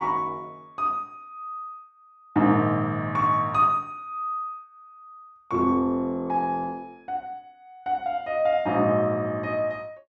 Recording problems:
none

